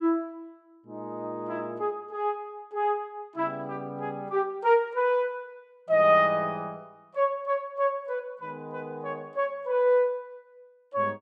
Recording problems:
none

